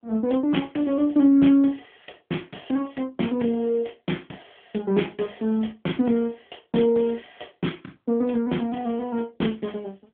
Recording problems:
telephone audio; 170 Hz to 3.4 kHz, AMR-NB

